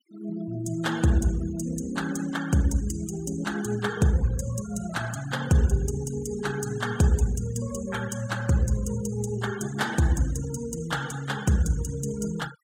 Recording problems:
noise reduction artefacts; signal-to-artefact ratio 17 dB

